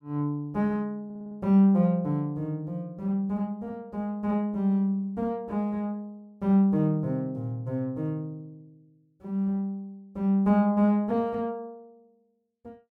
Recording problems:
audio stuttering; at 1 s

